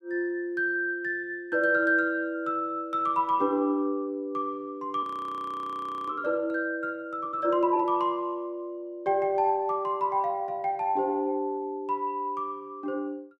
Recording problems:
frozen audio; at 5 s for 1 s

